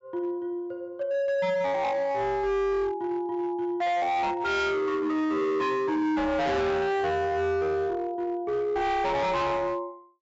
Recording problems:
treble cut off; nothing above 8 kHz
distortion; hard clipping, signal-to-distortion ratio 7 dB

